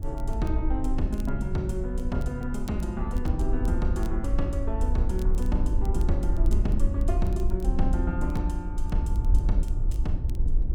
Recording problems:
low-frequency rumble; below 60 Hz, SNR -3 dB
crackling; vinyl, SNR 24 dB

